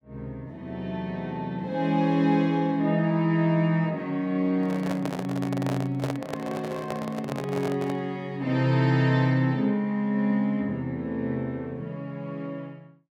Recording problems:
handling noise; from 4.5 to 8 s; peak -1 dB vs average level

